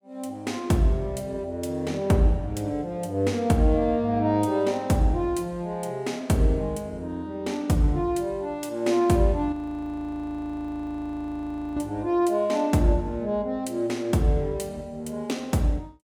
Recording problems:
frozen audio; at 9.5 s for 2 s

